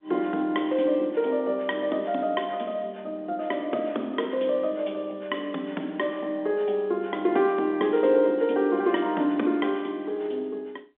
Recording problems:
phone line; 220 Hz to 3.6 kHz, G.711

